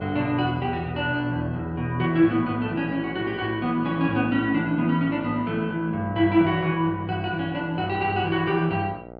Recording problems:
hum; 60 Hz, harmonics up to 1.6 kHz, SNR 17 dB

